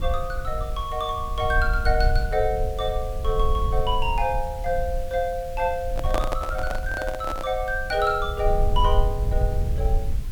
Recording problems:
background hiss; SNR 21 dB
low-frequency rumble; below 58 Hz, SNR 3 dB
microphone handling noise; from 6 to 7.5 s; peak +3 dB vs average level

